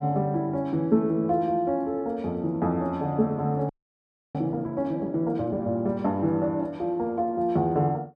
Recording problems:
audio freezing; at 3.5 s for 0.5 s

